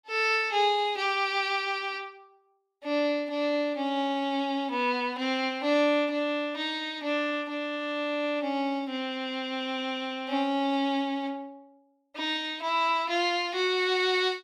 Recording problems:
none

